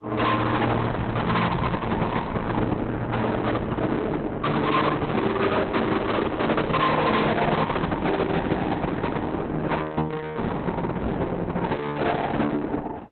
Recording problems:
lossy codec; Opus, log-spectral distance 4 dB, nothing above 4 kHz
distortion; soft clipping, signal-to-distortion ratio 5 dB
microphone thump; at 1.5 s and at 11 s; peak +7 dB vs average level

